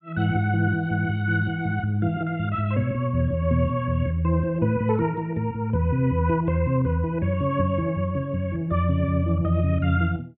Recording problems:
treble cut off; nothing above 4 kHz

